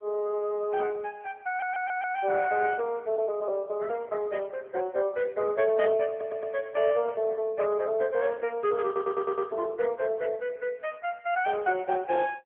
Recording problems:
telephone audio; 260 Hz to 3.3 kHz, AMR-NB
stutter; at 1.5 s, at 6 s and at 9 s

